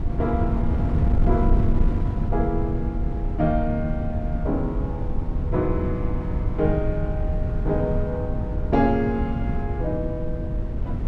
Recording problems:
wind noise; below 110 Hz, SNR -1 dB

